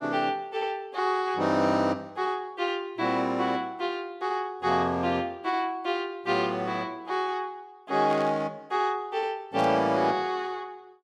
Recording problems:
burst of static; at 8 s and at 9.5 s; peak -10 dB vs average level

